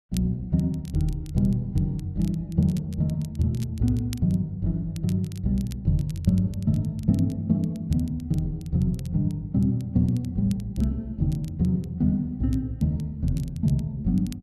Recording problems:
crackle; vinyl, SNR 25 dB

